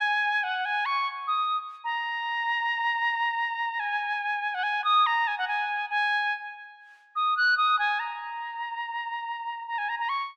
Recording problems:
none

